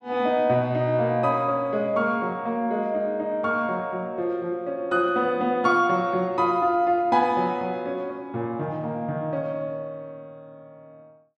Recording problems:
none

